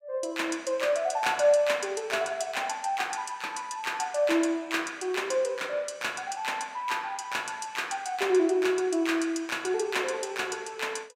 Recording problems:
none

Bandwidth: 16 kHz